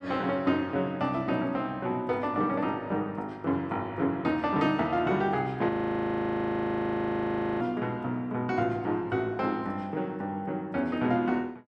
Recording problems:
audio freezing; at 5.5 s for 2 s

